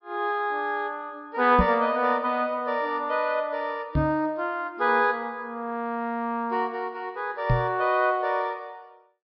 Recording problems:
treble cut off; nothing above 5.4 kHz
knock on the microphone; at 1.5 s, at 4 s and at 7.5 s; peak +5 dB vs average level

